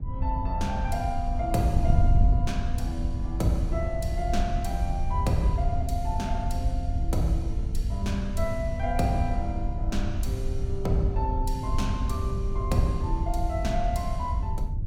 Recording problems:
wind noise; below 86 Hz, SNR -1 dB

